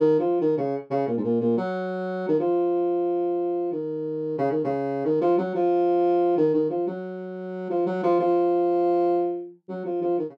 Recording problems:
none

